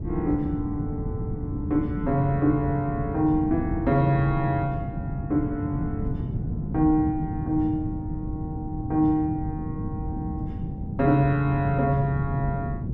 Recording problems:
wind on the microphone; below 200 Hz, SNR 6 dB

